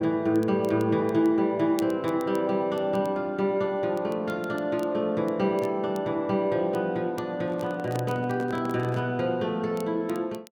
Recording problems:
crackling; vinyl, SNR 26 dB
handling noise; from 7.5 to 9 s; peak -5 dB vs average level

